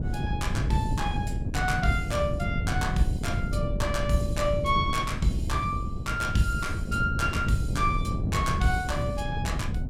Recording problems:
wind on the microphone; below 160 Hz, SNR 2 dB

